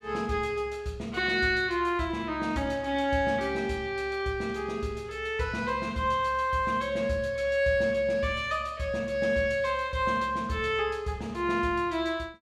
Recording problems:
none

